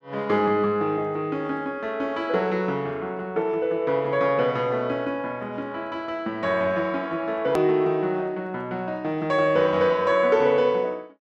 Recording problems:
hard cut with a click; at 7.5 s

